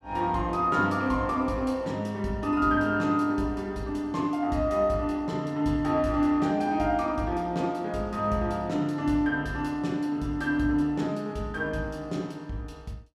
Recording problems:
none

